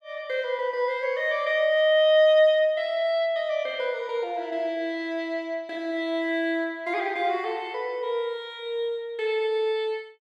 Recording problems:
none

